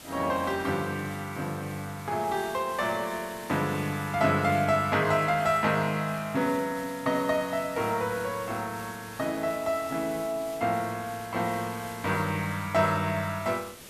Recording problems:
hiss; slope -2 dB per octave, SNR 16 dB

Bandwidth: 14 kHz